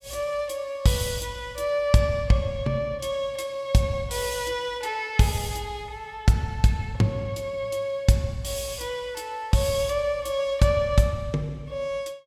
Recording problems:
none

